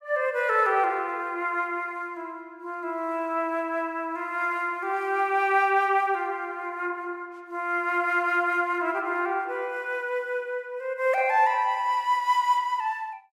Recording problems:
none

